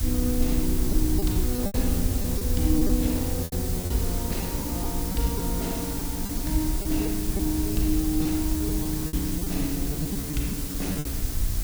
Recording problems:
electrical hum; 60 Hz, harmonics up to 1 kHz, SNR 12 dB
background hiss; slope 0 dB per octave, SNR 4 dB
rumble; below 66 Hz, SNR 3 dB
packet loss; 9% of the sound replaced, filled with repeated pitch periods

